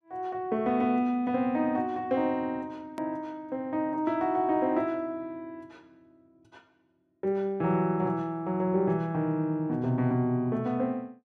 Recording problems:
hard cut with a click; at 3 s

